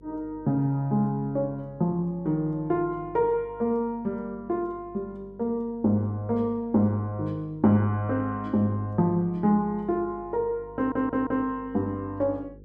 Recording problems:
mains hum; 50 Hz, harmonics up to 500 Hz, SNR 23 dB
audio stuttering; at 11 s

